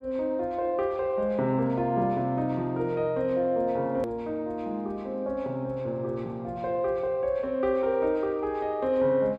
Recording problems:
edit click; at 4 s

